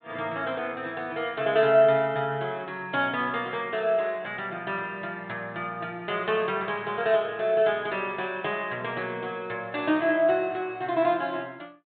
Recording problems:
treble missing; nothing above 4 kHz

